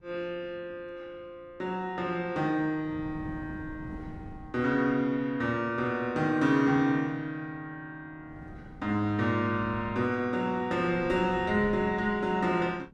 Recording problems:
wind noise; below 240 Hz, SNR 17 dB

